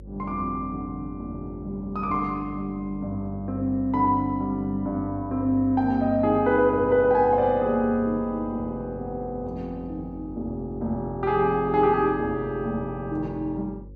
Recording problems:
electrical hum; 50 Hz, harmonics up to 550 Hz, SNR 18 dB

